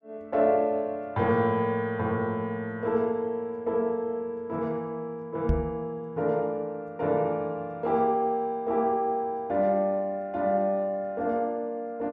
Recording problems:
knock on the microphone; at 5.5 s; peak +5 dB vs average level

